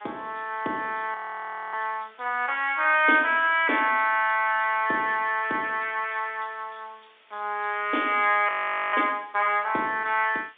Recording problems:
phone line; 240 Hz to 3.6 kHz, G.711
background hiss; SNR 30 dB
audio freezing; at 1 s for 0.5 s and at 8.5 s

